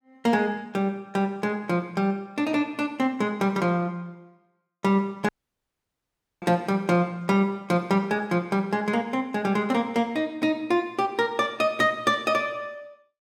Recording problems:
audio cutting out; at 5.5 s for 1 s

